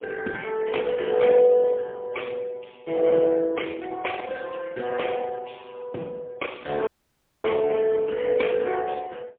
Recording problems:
telephone audio; 190 Hz to 3.4 kHz, AMR-NB, then MP3
audio cutting out; at 7 s for 0.5 s

